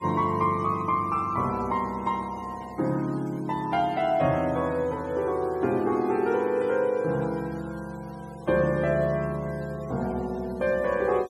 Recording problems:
denoising artefacts; signal-to-artefact ratio 25 dB

